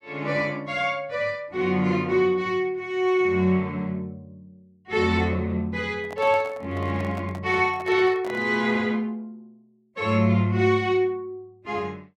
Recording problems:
handling noise; from 6 to 8.5 s; peak -10 dB vs average level

